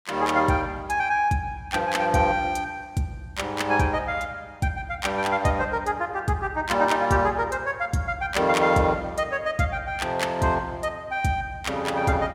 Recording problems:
none

